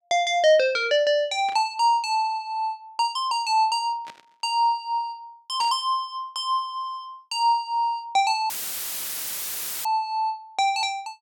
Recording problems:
burst of static; at 1.5 s, at 4 s and at 5.5 s; peak -14 dB vs average level
dropout; at 8.5 s for 1.5 s; filled with static

